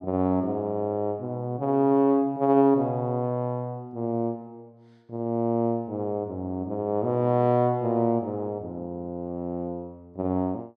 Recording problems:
none

